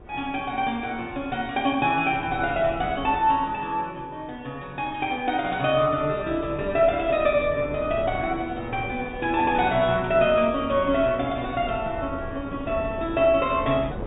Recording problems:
treble cut off; nothing above 4 kHz
wind noise; below 440 Hz, SNR 15 dB

